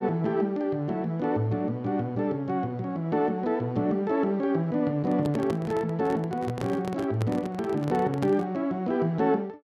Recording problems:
handling noise; from 5 to 8.5 s; peak -2 dB vs average level

